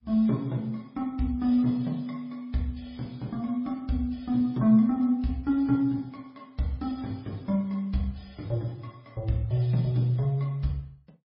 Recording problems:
codec artefacts; MP3, log-spectral distance 2 dB, nothing above 5 kHz

